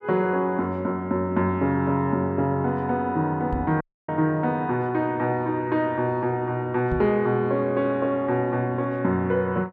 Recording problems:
microphone bump; at 3.5 s and at 7 s; peak 0 dB vs average level
audio cutting out; at 4 s

